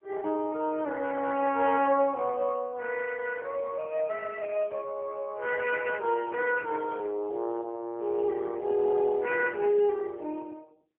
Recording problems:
phone line; 280 Hz to 3.3 kHz, AMR-NB, then MP3

